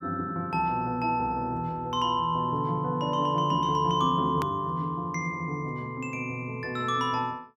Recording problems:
edit click; at 4.5 s

